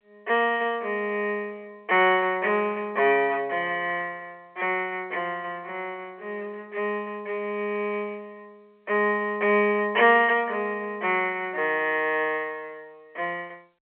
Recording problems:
telephone audio; 320 Hz to 3.3 kHz, G.711

